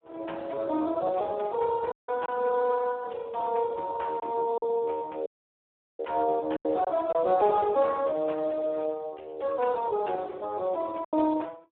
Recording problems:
telephone audio; 190 Hz to 3.7 kHz, Speex
packet loss; 3% of the sound replaced, filled with silence
dropout; at 2 s and at 5.5 s for 0.5 s

